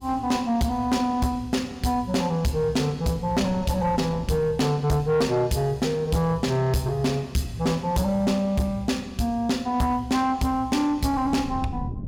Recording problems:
distorted audio; soft clipping, signal-to-distortion ratio 11 dB
wind on the microphone; below 190 Hz, SNR 13 dB

